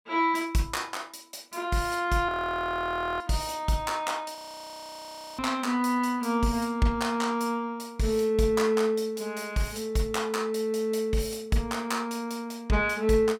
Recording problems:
frozen audio; at 2.5 s for 1 s and at 4.5 s for 1 s

